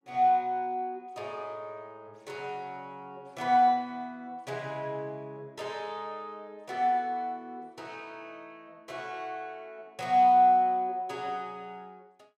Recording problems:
none

